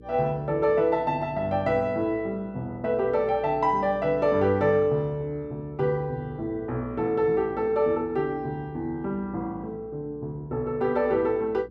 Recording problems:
electrical hum; 60 Hz, harmonics up to 480 Hz, SNR 22 dB

